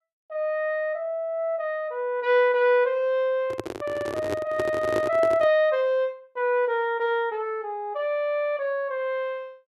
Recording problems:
handling noise; from 3.5 to 5.5 s; peak 0 dB vs average level

